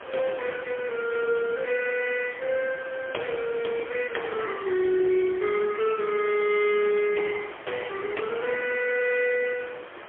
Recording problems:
phone line; 280 Hz to 3.3 kHz, AMR-NB, then MP3
background hiss; SNR 15 dB

